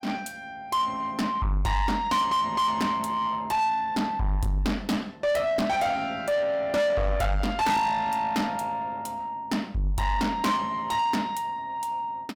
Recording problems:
distorted audio; soft clipping, signal-to-distortion ratio 7 dB

